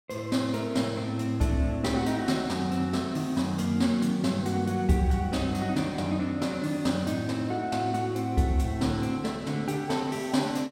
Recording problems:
none

